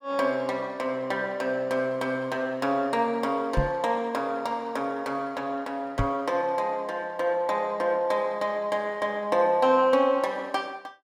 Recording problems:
microphone thump; at 3.5 s and at 6 s; peak +4 dB vs average level

